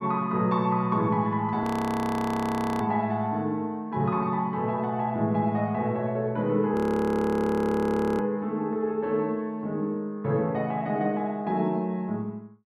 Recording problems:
audio freezing; at 1.5 s for 1 s and at 6.5 s for 1.5 s

